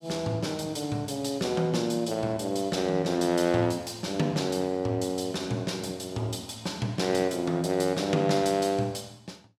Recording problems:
none

